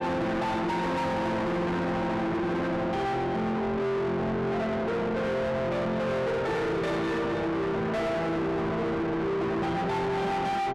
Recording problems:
distortion; soft clipping, signal-to-distortion ratio 5 dB

